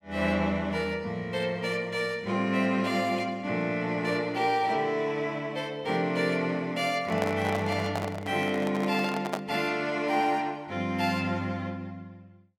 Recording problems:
microphone handling noise; from 7 to 9.5 s; peak +2 dB vs average level

